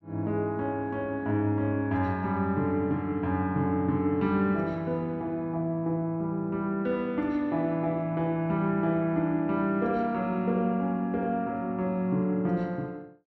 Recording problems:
none

